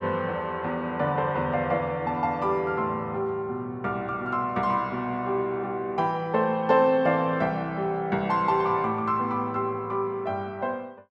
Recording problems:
none

